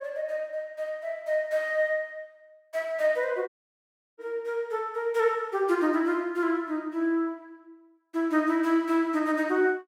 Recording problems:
audio cutting out; at 3.5 s for 0.5 s

